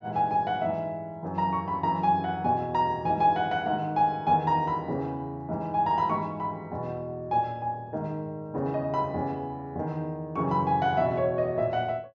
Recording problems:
treble missing; nothing above 8 kHz

